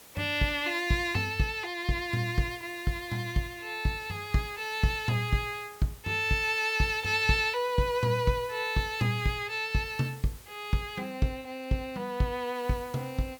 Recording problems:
background hiss; slope -2 dB per octave, SNR 21 dB

